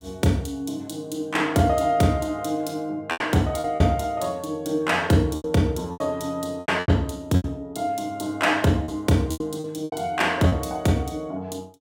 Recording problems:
packet loss; 7% of the sound replaced, filled with repeated pitch periods

